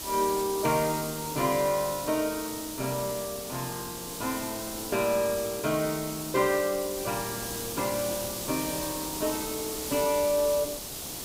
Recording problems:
background hiss; SNR 5 dB

